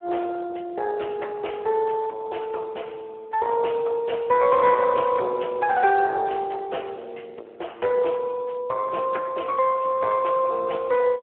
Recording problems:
phone line; 320 Hz to 2.8 kHz, Speex
distorted audio; soft clipping, signal-to-distortion ratio 11 dB

